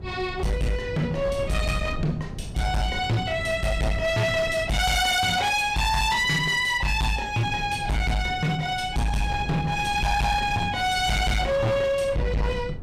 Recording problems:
distorted audio; hard clipping, signal-to-distortion ratio 8 dB
wind on the microphone; below 190 Hz, SNR 12 dB

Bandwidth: 15.5 kHz